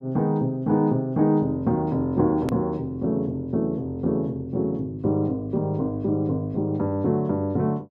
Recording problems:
edit click; at 2.5 s

